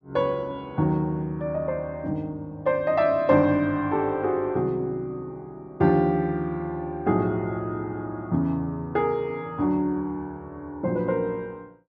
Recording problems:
none

